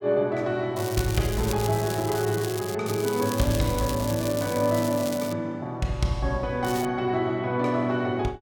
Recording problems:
crackle; from 1 to 3 s, from 3 to 5.5 s and at 6.5 s; loose cable, SNR 11 dB

